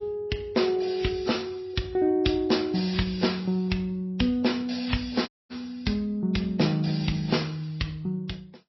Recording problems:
lossy codec; AAC, then MP3, log-spectral distance 4 dB, nothing above 5.7 kHz
audio cutting out; at 5.5 s

